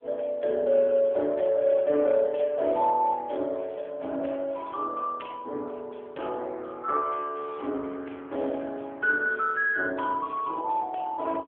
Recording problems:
telephone audio; 260 Hz to 3.4 kHz, AMR-NB

